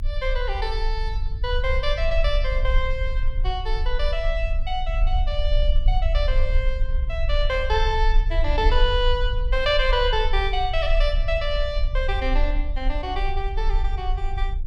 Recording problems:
low-frequency rumble; below 46 Hz, strongest tone 30 Hz, SNR 0 dB

